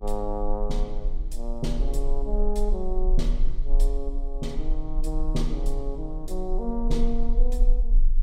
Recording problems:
hum; 60 Hz, harmonics up to 480 Hz, SNR 19 dB
low-frequency rumble; below 34 Hz, strongest tone 22 Hz, SNR -3 dB

